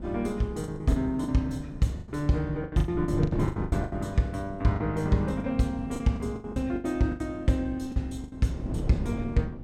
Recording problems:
wind noise; below 290 Hz, SNR 10 dB
packet loss; 14% of the sound replaced, filled with the last packet

